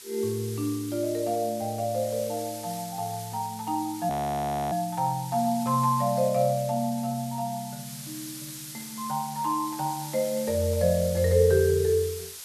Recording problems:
background hiss; slope +3 dB per octave, SNR 12 dB
frozen audio; at 4 s for 0.5 s

